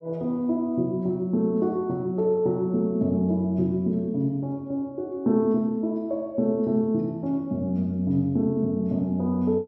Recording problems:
none

